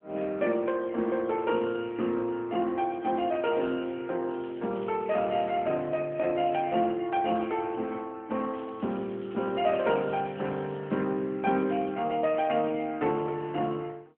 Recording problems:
phone line; 170 Hz to 3.6 kHz, AMR-NB
crackle; from 4.5 to 5.5 s and from 8.5 to 11 s; loose cable, SNR 27 dB

